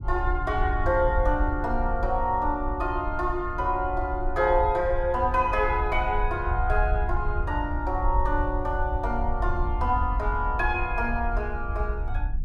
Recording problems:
low-frequency rumble; below 66 Hz, SNR 4 dB

